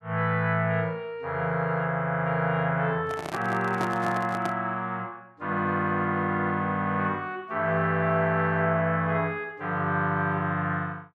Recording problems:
handling noise; from 3 to 4.5 s; peak -2 dB vs average level

